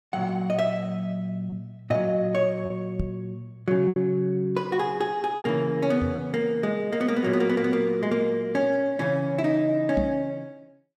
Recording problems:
packet loss; 2% of the sound replaced, filled with repeated pitch periods
microphone bump; at 3 s, at 6 s and at 10 s; peak 0 dB vs average level

